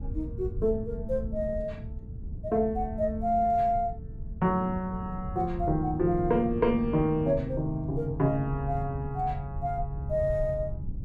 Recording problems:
rumble; below 100 Hz, SNR 10 dB

